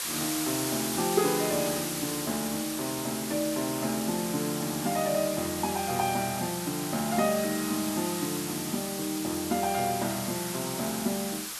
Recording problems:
background hiss; slope +2 dB per octave, SNR 3 dB

